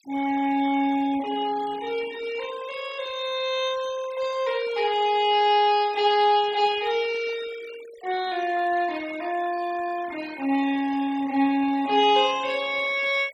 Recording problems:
denoising artefacts; signal-to-artefact ratio 20 dB

